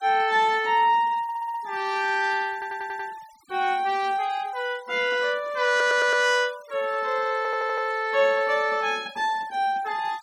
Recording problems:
noise reduction artefacts; signal-to-artefact ratio 25 dB
stutter; 4 times, first at 1 s

